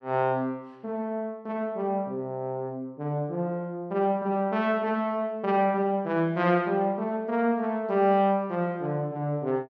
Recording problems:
none

